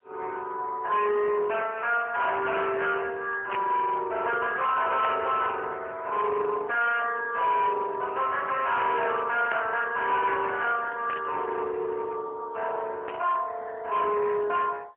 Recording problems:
telephone audio; 370 Hz to 3.4 kHz, AMR-NB, then MP3
distorted audio; hard clipping, signal-to-distortion ratio 11 dB
static burst; 5 times, first at 3.5 s; peak -3 dB vs average level

